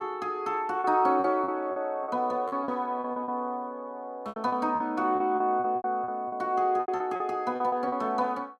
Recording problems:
packet loss; 13% of the sound replaced, filled with repeated pitch periods

